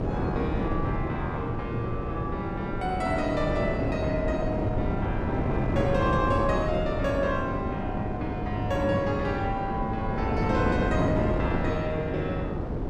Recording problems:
wind on the microphone; below 420 Hz, SNR 0 dB

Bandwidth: 12.5 kHz